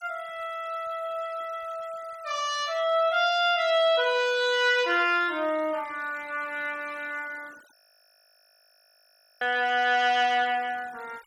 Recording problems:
noise reduction artefacts; signal-to-artefact ratio 25 dB
audio freezing; at 8 s for 1.5 s

